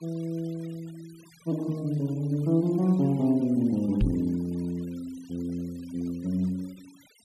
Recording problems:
denoising artefacts; signal-to-artefact ratio 26 dB
microphone thump; at 4 s; peak +5 dB vs average level

